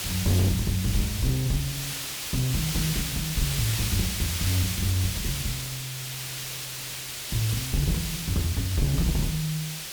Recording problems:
distorted audio; hard clipping, uneven, signal-to-distortion ratio 6 dB
hiss; slope +1 dB per octave, SNR 3 dB

